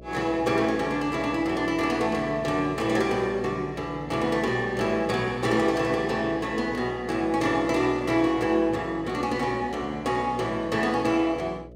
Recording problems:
electrical hum; 60 Hz, harmonics up to 660 Hz, SNR 19 dB

